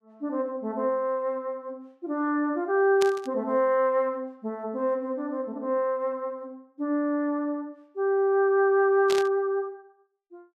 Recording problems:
burst of static; at 3 s and at 9 s; peak -2 dB vs average level

